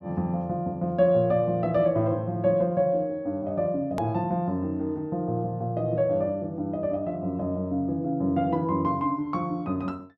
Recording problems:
edit click; at 4 s

